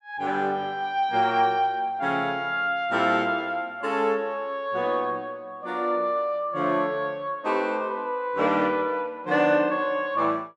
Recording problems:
none

